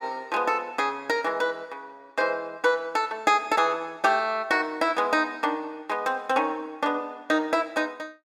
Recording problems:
none

